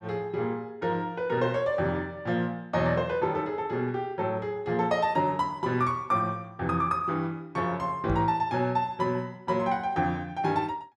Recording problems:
microphone thump; at 8 s; peak +1 dB vs average level

